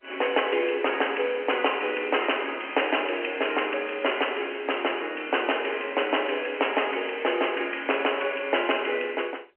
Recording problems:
telephone audio; 320 Hz to 3.1 kHz, G.711

